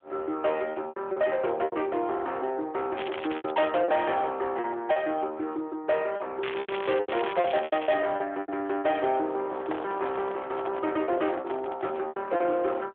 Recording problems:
phone line; 300 Hz to 3.7 kHz, AMR-NB
distorted audio; soft clipping, signal-to-distortion ratio 11 dB
lost packets; 9% of the sound replaced, filled with repeated pitch periods
crackle; at 3 s and from 6.5 to 8 s; loose cable, SNR 10 dB
microphone handling noise; from 9.5 to 12 s; peak -1 dB vs average level

